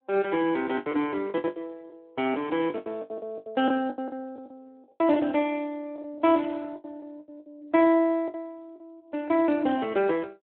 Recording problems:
phone line; 260 Hz to 3.4 kHz, Speex
lost packets; 14% of the sound replaced, filled with the last packet

